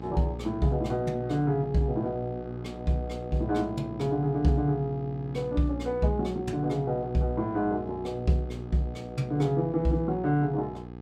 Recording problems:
electrical hum; 60 Hz, harmonics up to 1.3 kHz, SNR 12 dB

